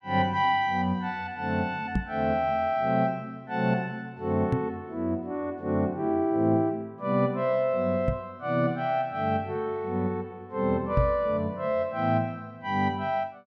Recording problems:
microphone thump; 4 times, first at 2 s; peak +5 dB vs average level

